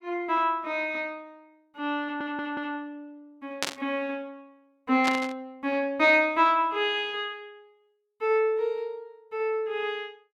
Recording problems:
audio stuttering; at 2 s
burst of static; at 3.5 s and at 5 s; peak +3 dB vs average level

